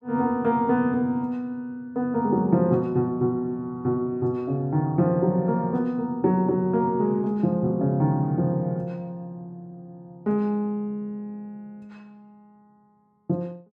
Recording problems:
none

